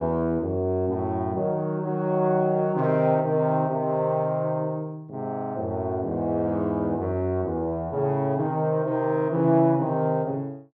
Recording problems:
none

